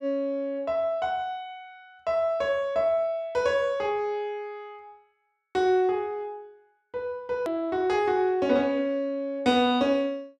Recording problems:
edit click; at 7.5 s

